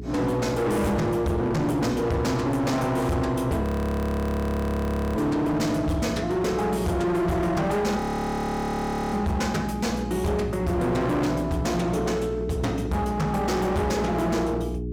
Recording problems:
distorted audio; hard clipping, signal-to-distortion ratio 7 dB
hum; 60 Hz, harmonics up to 420 Hz, SNR 10 dB
frozen audio; at 3.5 s for 1.5 s and at 8 s for 1 s

